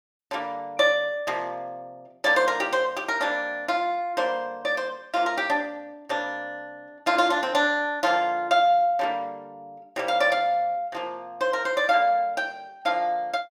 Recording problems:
none

